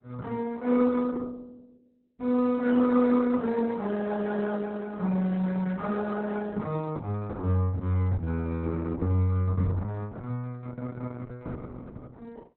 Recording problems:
lossy compression; Opus, log-spectral distance 3 dB, nothing above 4 kHz

